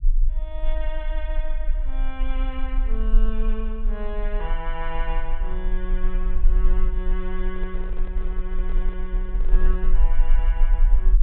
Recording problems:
treble cut off; nothing above 4 kHz
low-frequency rumble; below 36 Hz, strongest tone 18 Hz, SNR -9 dB
handling noise; from 7.5 to 10 s; peak -5 dB vs average level

